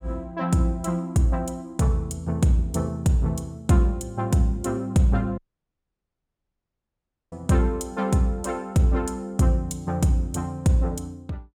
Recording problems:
dropout; at 5.5 s for 2 s

